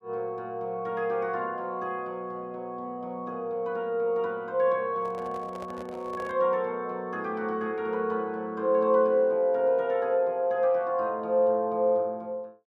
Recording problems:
microphone handling noise; from 5 to 6.5 s; peak -10 dB vs average level

